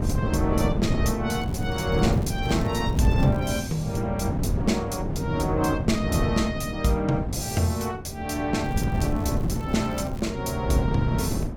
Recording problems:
wind noise; below 230 Hz, SNR 1 dB
crackling; from 1.5 to 3.5 s and from 8.5 to 10 s; loose cable, SNR 23 dB

